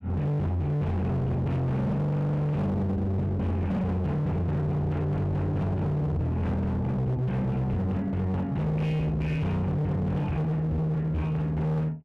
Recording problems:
distortion; hard clipping, uneven, signal-to-distortion ratio 7 dB

